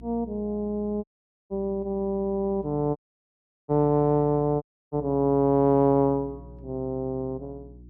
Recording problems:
electrical hum; 60 Hz, harmonics up to 360 Hz, SNR 21 dB
dropout; at 1 s, at 3 s for 0.5 s and at 4.5 s

